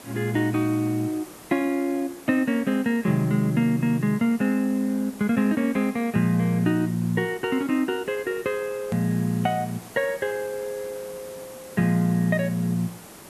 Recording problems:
background hiss; slope -5 dB per octave, SNR 19 dB
edit click; at 9 s

